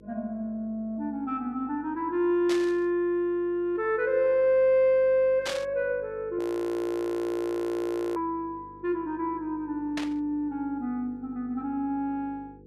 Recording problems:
electrical hum; 50 Hz, harmonics up to 500 Hz, SNR 24 dB
static burst; at 2.5 s, at 5.5 s and at 10 s; peak -1 dB vs average level
frozen audio; at 6.5 s for 2 s

